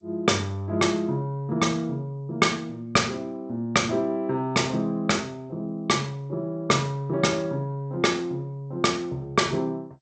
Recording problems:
codec artefacts; G.722, log-spectral distance 2 dB, nothing above 7.6 kHz

